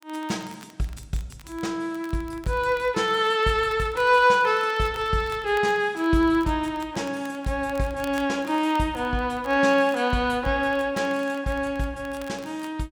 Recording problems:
crackle; vinyl, SNR 25 dB

